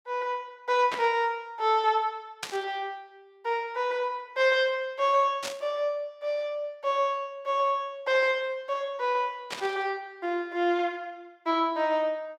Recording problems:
burst of static; 4 times, first at 1 s; peak -1 dB vs average level

